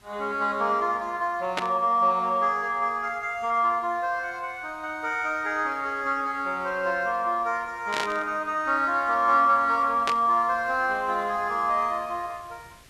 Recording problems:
background hiss; slope -1 dB per octave, SNR 29 dB
static burst; at 1.5 s, at 8 s and at 10 s; peak +1 dB vs average level

